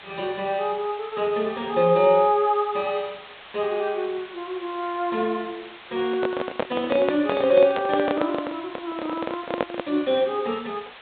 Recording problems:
treble missing; nothing above 4 kHz
background hiss; SNR 18 dB
handling noise; from 6 to 10 s; peak +4 dB vs average level

